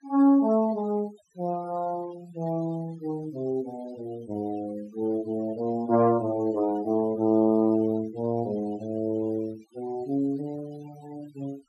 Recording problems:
noise reduction artefacts; signal-to-artefact ratio 22 dB

